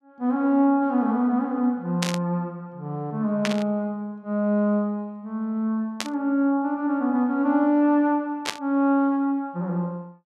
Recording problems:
static burst; 4 times, first at 2 s; peak +2 dB vs average level

